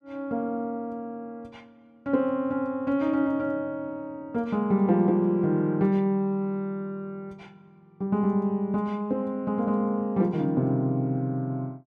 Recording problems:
none

